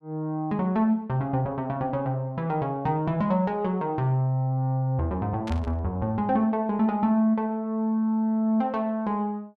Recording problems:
burst of static; at 5.5 s; peak -11 dB vs average level

